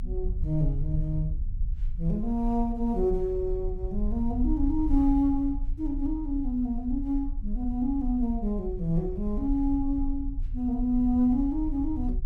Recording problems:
low-frequency rumble; below 48 Hz, strongest tone 26 Hz, SNR 6 dB

